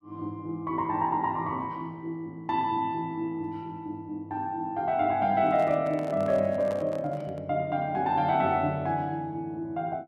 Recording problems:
microphone handling noise; from 5.5 to 7.5 s; peak -8 dB vs average level

